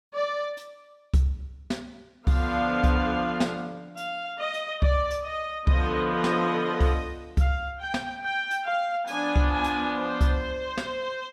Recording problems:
none

